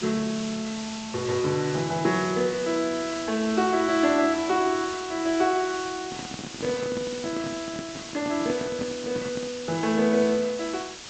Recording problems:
treble missing; nothing above 8 kHz
hiss; slope 0 dB per octave, SNR 11 dB
microphone handling noise; from 6 to 9.5 s; peak -4 dB vs average level

